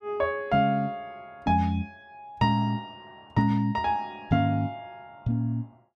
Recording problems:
none

